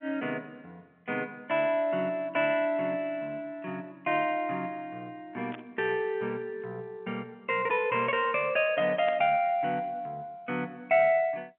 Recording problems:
telephone audio; 220 Hz to 3.4 kHz, G.711
burst of static; at 5.5 s and at 9 s; peak -7 dB vs average level

